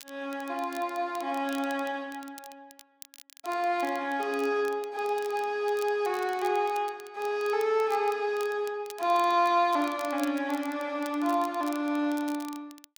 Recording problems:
crackling; vinyl, SNR 20 dB

